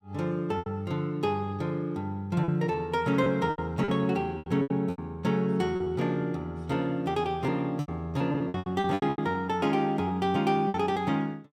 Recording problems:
lost packets; 11% of the sound replaced, filled with repeated pitch periods

